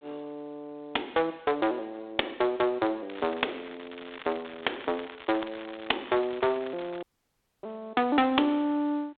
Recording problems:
phone line; 260 Hz to 3.7 kHz, G.726
crackling; from 3 to 7 s; loose cable, SNR 16 dB
dropout; at 7 s for 0.5 s

